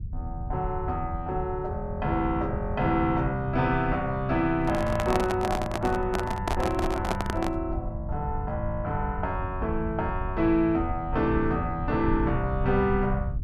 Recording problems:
rumble; below 98 Hz, SNR 8 dB
microphone handling noise; from 4.5 to 7.5 s; peak +4 dB vs average level

